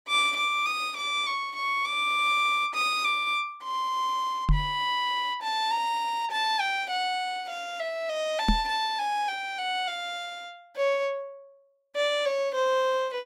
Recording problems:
microphone thump; at 4.5 s and at 8.5 s; peak +6 dB vs average level

